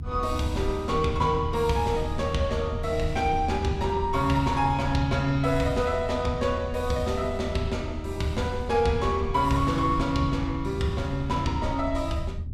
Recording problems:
low-frequency rumble; below 84 Hz, SNR 8 dB

